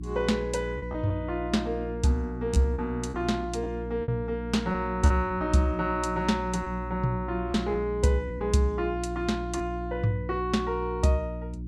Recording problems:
electrical hum; 60 Hz, harmonics up to 360 Hz, SNR 9 dB
packet loss; 4% of the sound replaced, filled with repeated pitch periods

